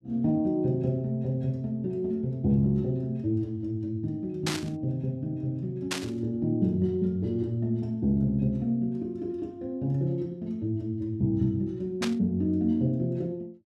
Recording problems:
static burst; at 4.5 s, at 6 s and at 12 s; peak +3 dB vs average level

